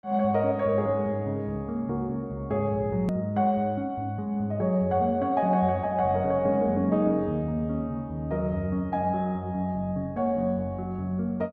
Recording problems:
click at an edit; at 3 s

